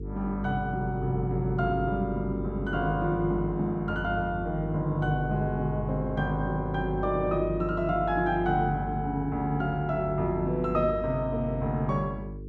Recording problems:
electrical hum; 50 Hz, harmonics up to 450 Hz, SNR 8 dB

